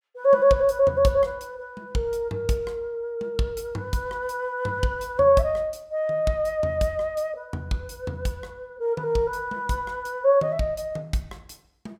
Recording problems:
none

